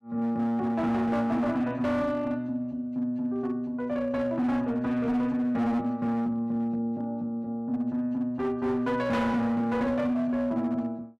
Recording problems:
distorted audio; hard clipping, uneven, signal-to-distortion ratio 12 dB

